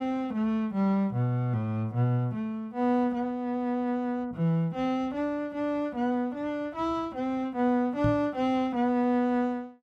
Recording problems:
microphone thump; at 8 s; peak +3 dB vs average level

